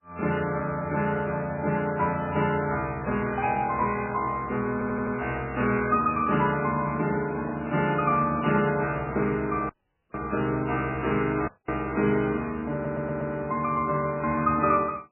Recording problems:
codec artefacts; MP3, log-spectral distance 3 dB, nothing above 2.5 kHz
audio stuttering; at 4.5 s and at 13 s
microphone handling noise; from 7 to 9.5 s; peak -8 dB vs average level
audio cutting out; at 9.5 s and at 11 s

